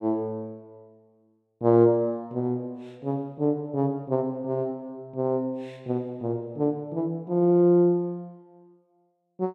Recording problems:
none

